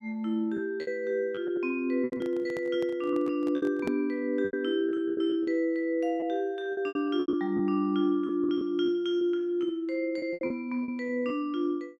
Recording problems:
packet loss; 11% of the sound replaced, filled with repeated pitch periods
handling noise; from 2 to 4 s; peak -4 dB vs average level

